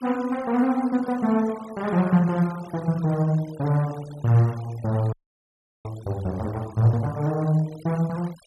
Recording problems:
noise reduction artefacts; signal-to-artefact ratio 22 dB
audio freezing; at 5 s for 0.5 s

